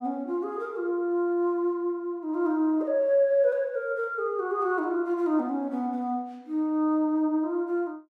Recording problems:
none

